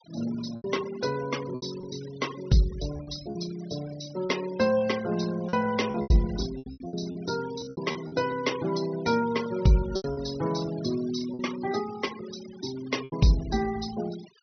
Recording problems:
treble missing; nothing above 6 kHz
denoising artefacts; signal-to-artefact ratio 15 dB
lost packets; 8% of the sound replaced, filled with repeated pitch periods

